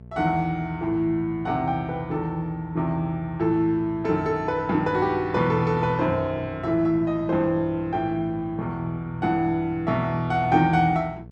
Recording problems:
hum; 60 Hz, harmonics up to 720 Hz, SNR 19 dB

